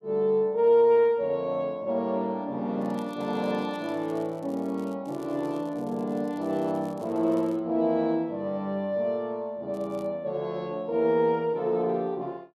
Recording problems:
crackle; from 3 to 5 s, from 5 to 7.5 s and at 9.5 s; loose cable, SNR 30 dB

